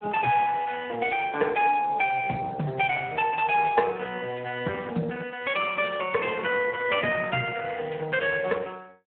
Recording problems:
telephone audio; 190 Hz to 3.5 kHz, Speex

